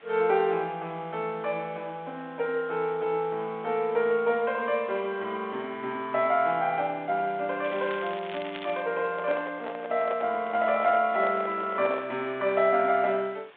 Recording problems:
phone line; 260 Hz to 3.8 kHz, G.726
hiss; SNR 25 dB
crackling; from 7.5 to 9 s; loose cable, SNR 15 dB
handling noise; from 9 to 12 s; peak -4 dB vs average level

